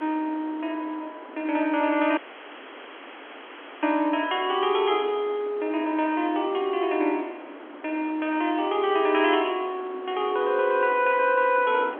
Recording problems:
phone line; 240 Hz to 3.4 kHz, G.711
background hiss; SNR 23 dB
wind on the microphone; below 900 Hz, SNR 19 dB
audio cutting out; at 2 s for 1.5 s

